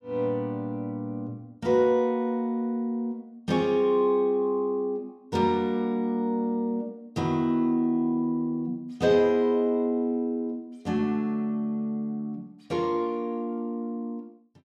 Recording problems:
none

